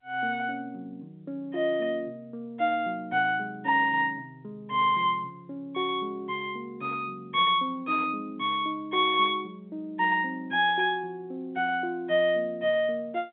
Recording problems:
phone line; 280 Hz to 3.7 kHz, G.711

